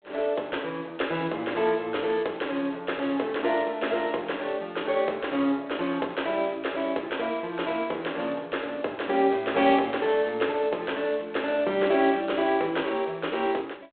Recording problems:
phone line; 300 Hz to 3.6 kHz, G.726

